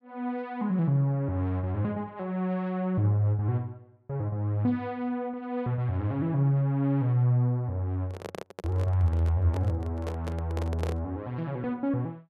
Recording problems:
microphone handling noise; from 8 to 11 s; peak -2 dB vs average level

